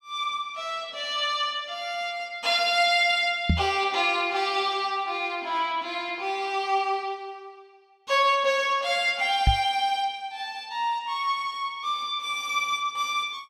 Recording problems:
microphone thump; at 3.5 s and at 9.5 s; peak +7 dB vs average level

